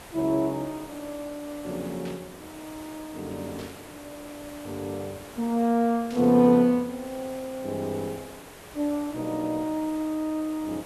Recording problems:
background hiss; slope -5 dB per octave, SNR 17 dB
burst of static; at 2 s, at 3.5 s and at 6 s; peak -13 dB vs average level

